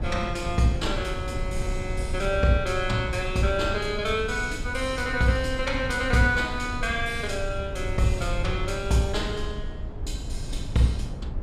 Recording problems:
rumble; below 110 Hz, SNR 7 dB

